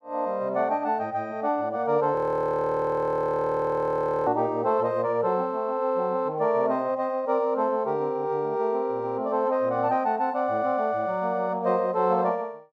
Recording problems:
frozen audio; at 2 s for 2 s

